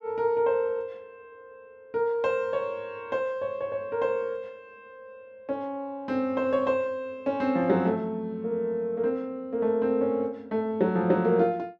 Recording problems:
none

